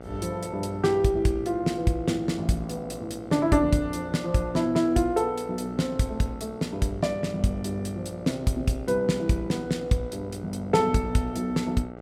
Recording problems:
hum; 60 Hz, harmonics up to 2.2 kHz, SNR 16 dB

